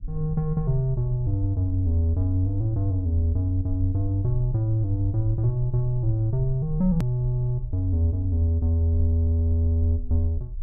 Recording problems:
rumble; below 46 Hz, SNR 12 dB
hard cut with a click; at 7 s

